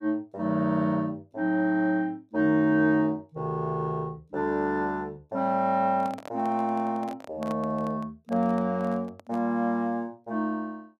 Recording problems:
microphone handling noise; from 6 to 9.5 s; peak -8 dB vs average level

